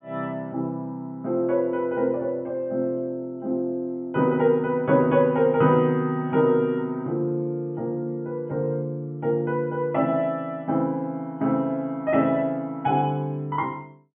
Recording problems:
treble cut off; nothing above 3.5 kHz

